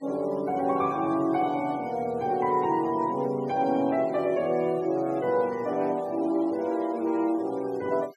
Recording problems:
noise reduction artefacts; signal-to-artefact ratio 24 dB

